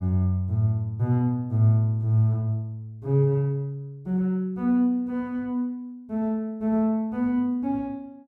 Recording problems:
none

